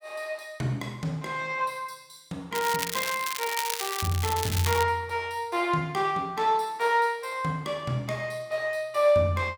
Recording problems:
crackle; from 2.5 to 5 s; loose cable, SNR 4 dB

